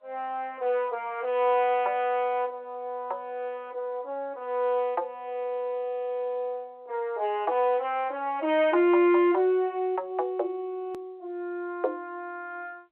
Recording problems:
telephone audio; 300 Hz to 3.3 kHz, G.711
hard cut with a click; at 11 s

